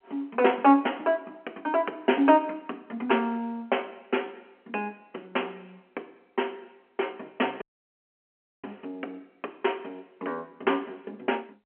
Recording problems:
telephone audio; 240 Hz to 3.2 kHz, G.711
audio cutting out; at 7.5 s for 1 s

